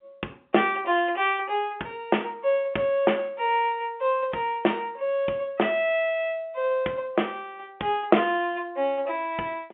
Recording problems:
phone line; 280 Hz to 3.4 kHz, G.711

